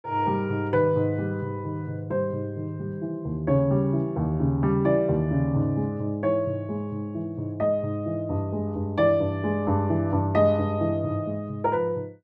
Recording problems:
none

